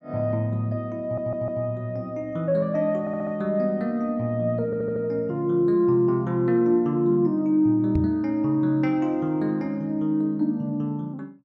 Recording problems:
audio stuttering; at 1 s, at 3 s and at 4.5 s
microphone bump; at 8 s; peak +3 dB vs average level

